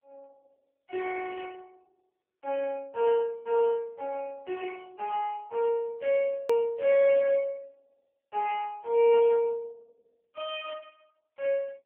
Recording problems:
telephone audio; 300 Hz to 2.9 kHz, AMR-NB
click at an edit; at 6.5 s

